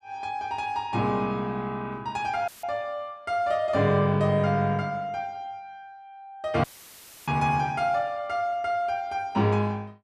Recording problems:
audio cutting out; at 2.5 s and at 6.5 s for 0.5 s; filled with static

